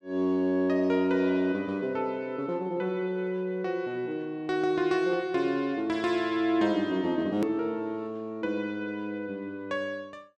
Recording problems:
edit click; at 7.5 s

